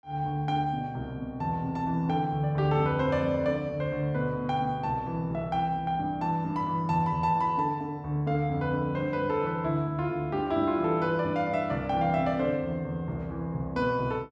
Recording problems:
none

